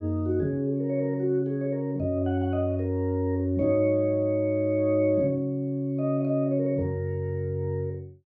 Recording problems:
none

